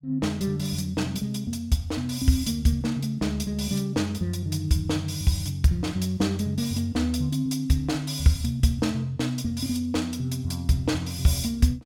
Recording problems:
none

